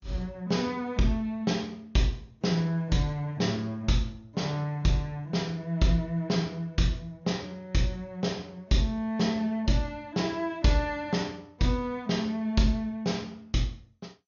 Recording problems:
lossy compression; MP2, log-spectral distance 2 dB, nothing above 6.7 kHz

